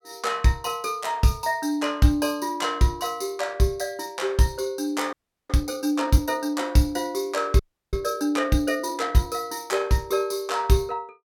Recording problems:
frozen audio; at 5 s and at 7.5 s

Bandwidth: 17 kHz